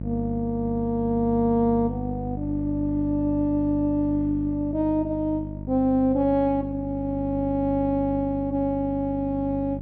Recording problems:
hum; 50 Hz, harmonics up to 650 Hz, SNR 9 dB

